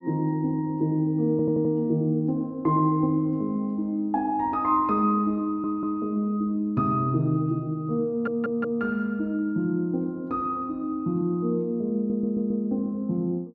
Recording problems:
stutter; 4 times, first at 1.5 s

